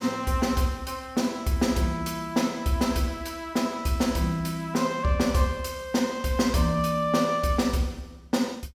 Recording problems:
none

